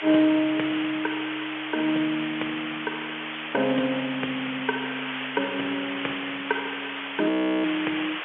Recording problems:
telephone audio; 340 Hz to 3.4 kHz, G.711
hiss; SNR 5 dB
frozen audio; at 7.5 s

